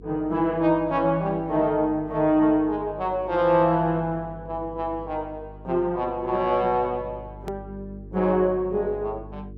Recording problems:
hum; 50 Hz, harmonics up to 450 Hz, SNR 19 dB
click at an edit; at 7.5 s

